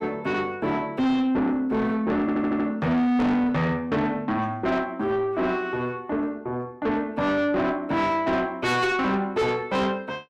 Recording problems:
distorted audio; soft clipping, signal-to-distortion ratio 8 dB
stutter; at 2 s

